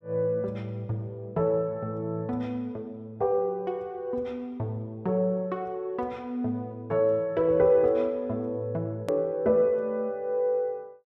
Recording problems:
click at an edit; at 9 s

